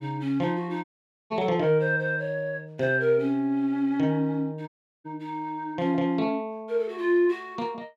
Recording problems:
audio cutting out; at 1 s and at 4.5 s

